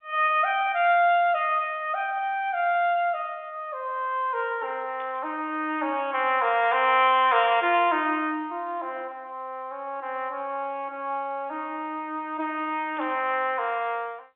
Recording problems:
telephone audio; 280 Hz to 3.6 kHz, G.711
static burst; at 5 s, at 7.5 s and at 13 s; peak -17 dB vs average level

